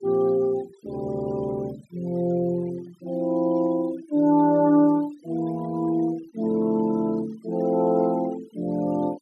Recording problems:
denoising artefacts; signal-to-artefact ratio 24 dB

